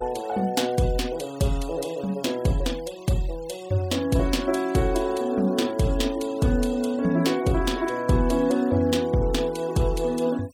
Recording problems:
noise reduction artefacts; signal-to-artefact ratio 21 dB

